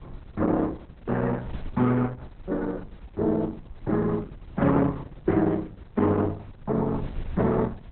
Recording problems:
codec artefacts; Opus, log-spectral distance 3 dB
wind on the microphone; below 110 Hz, SNR 18 dB

